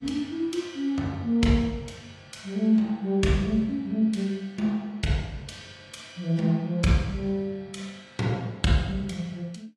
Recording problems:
lossy compression; AAC, log-spectral distance 2 dB, nothing above 11 kHz

